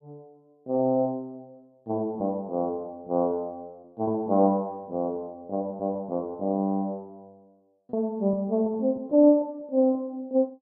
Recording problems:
packet loss; 6% of the sound replaced, filled with repeated pitch periods

